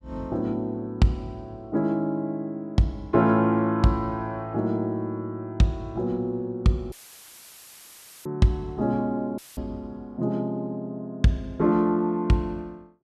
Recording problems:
audio cutting out; at 7 s for 1.5 s and at 9.5 s; filled with static

